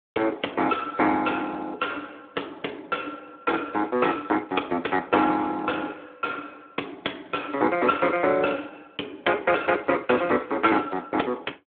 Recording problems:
phone line; 260 Hz to 3.4 kHz, Speex

